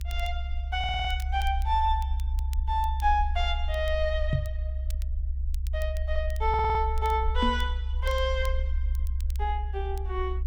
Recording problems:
low-frequency rumble; below 68 Hz, strongest tone 66 Hz, SNR 1 dB
crackle; vinyl, SNR 23 dB
audio stuttering; at 1 s and at 6.5 s
microphone thump; at 4.5 s and at 7.5 s; peak +7 dB vs average level

